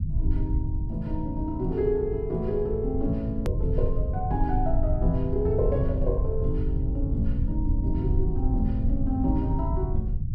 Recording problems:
rumble; below 96 Hz, SNR -1 dB
edit click; at 3.5 s

